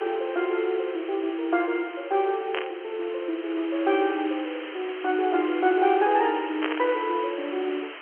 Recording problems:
phone line; 260 Hz to 3.7 kHz, G.711
background hiss; SNR 14 dB
static burst; at 2.5 s and at 6.5 s; peak +1 dB vs average level

